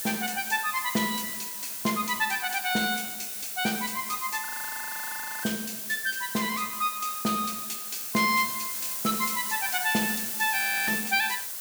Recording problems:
background hiss; slope +1 dB per octave, SNR 3 dB
audio freezing; at 4.5 s for 1 s and at 11 s

